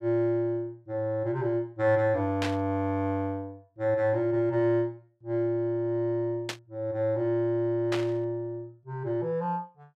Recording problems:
burst of static; at 2.5 s, at 6.5 s and at 8 s; peak 0 dB vs average level

